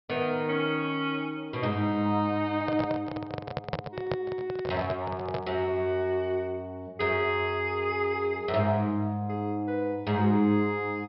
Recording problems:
treble missing; nothing above 5.5 kHz
handling noise; from 2.5 to 5.5 s; peak +1 dB vs average level

